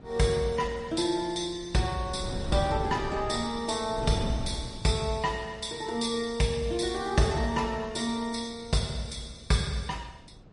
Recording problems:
codec artefacts; MP3, log-spectral distance 3 dB, nothing above 10.4 kHz
wind on the microphone; below 290 Hz, SNR 12 dB

